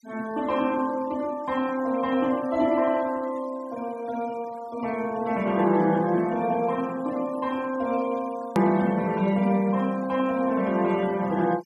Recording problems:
noise reduction artefacts; signal-to-artefact ratio 21 dB
hard cut with a click; at 8.5 s

